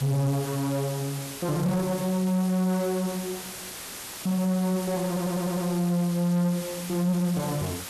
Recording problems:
distortion; soft clipping, signal-to-distortion ratio 11 dB
hiss; slope -1 dB per octave, SNR 10 dB
audio stuttering; at 5 s

